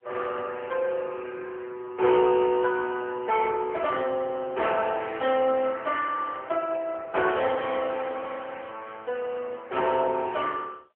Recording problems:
telephone audio; 320 Hz to 3.8 kHz, AMR-NB

